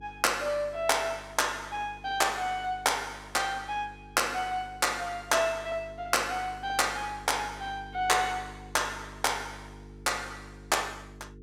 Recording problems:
electrical hum; 50 Hz, harmonics up to 450 Hz, SNR 20 dB

